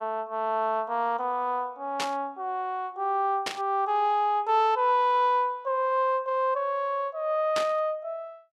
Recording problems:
static burst; at 2 s, at 3.5 s and at 7.5 s; peak 0 dB vs average level

